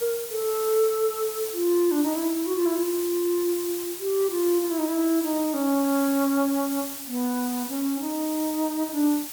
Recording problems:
hiss; slope +1 dB per octave, SNR 8 dB

